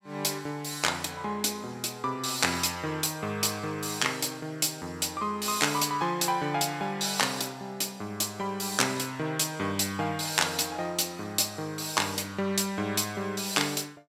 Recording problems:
none

